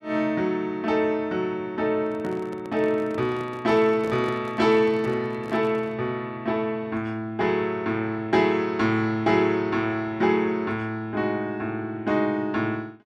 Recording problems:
handling noise; from 2 to 6 s; peak -8 dB vs average level

